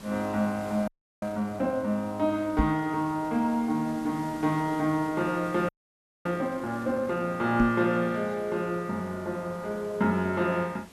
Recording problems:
background hiss; slope -4 dB per octave, SNR 20 dB
frozen audio; at 1 s and at 5.5 s for 0.5 s
microphone thump; at 2.5 s and at 7.5 s; peak +6 dB vs average level

